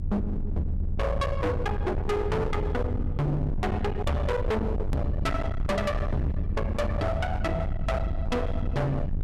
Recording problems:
distortion; hard clipping, signal-to-distortion ratio 6 dB
hum; 50 Hz, harmonics up to 600 Hz, SNR 20 dB
low-frequency rumble; below 150 Hz, SNR 2 dB
click at an edit; at 5 s

